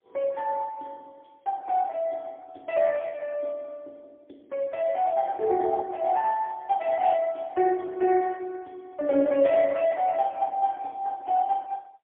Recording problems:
telephone audio; 240 Hz to 3.4 kHz, AMR-NB, then MP3

